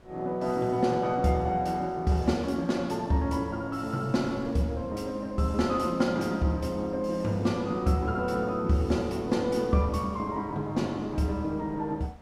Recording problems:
wind noise; below 590 Hz, SNR 23 dB

